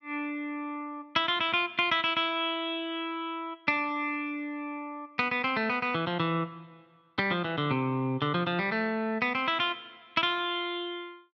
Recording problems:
none

